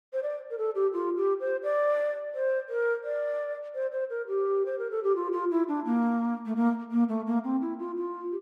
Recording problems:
none

